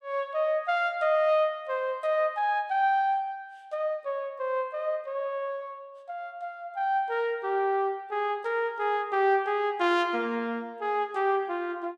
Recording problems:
none

